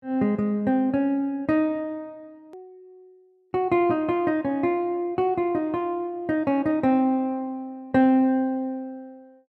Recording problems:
hard cut with a click; at 2.5 s

